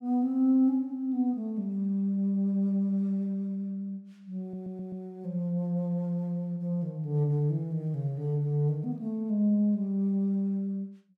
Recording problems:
stutter; at 4.5 s

